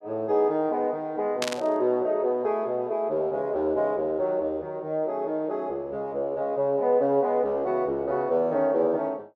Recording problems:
burst of static; at 1.5 s; peak +2 dB vs average level

